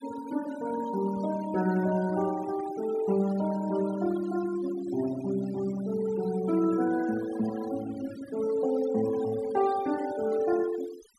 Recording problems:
noise reduction artefacts; signal-to-artefact ratio 16 dB

